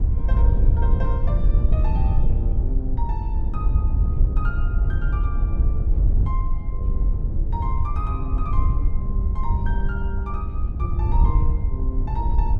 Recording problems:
wind noise; below 74 Hz, SNR -12 dB

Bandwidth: 12 kHz